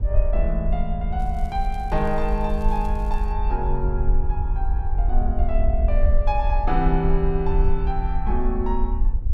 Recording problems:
wind on the microphone; below 52 Hz, SNR -2 dB
crackling; from 1 to 3.5 s; loose cable, SNR 27 dB

